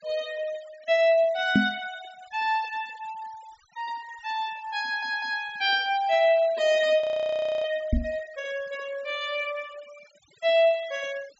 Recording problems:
low-pass filter; nothing above 8 kHz
noise reduction artefacts; signal-to-artefact ratio 22 dB
knock on the microphone; at 1.5 s and at 8 s; peak +8 dB vs average level
stutter; at 5 s
frozen audio; at 7 s for 0.5 s

